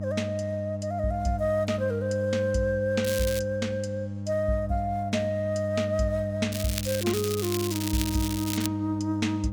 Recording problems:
electrical hum; 50 Hz, harmonics up to 600 Hz, SNR 5 dB
crackling; at 3 s and from 6.5 to 8.5 s; loose cable, SNR 5 dB

